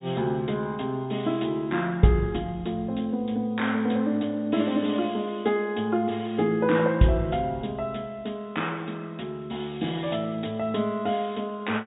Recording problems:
treble missing; nothing above 4 kHz

